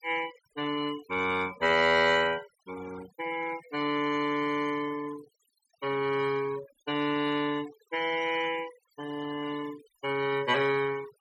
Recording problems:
noise reduction artefacts; signal-to-artefact ratio 14 dB

